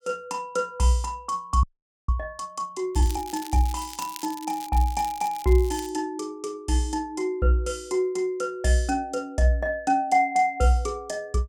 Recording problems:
frozen audio; at 1.5 s
crackling; from 3 to 6 s; loose cable, SNR 16 dB

